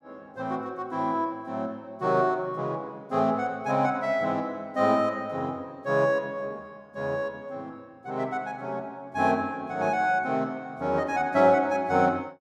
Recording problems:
none

